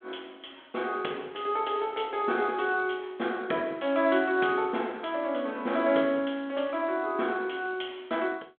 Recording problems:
phone line; 240 Hz to 3.4 kHz, G.726

